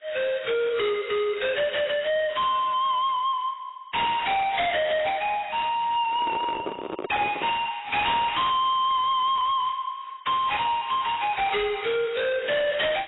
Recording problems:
lossy compression; AAC, then AAC, log-spectral distance 5 dB, nothing above 3.7 kHz
distorted audio; soft clipping, signal-to-distortion ratio 5 dB
handling noise; from 6 to 7.5 s; peak -2 dB vs average level

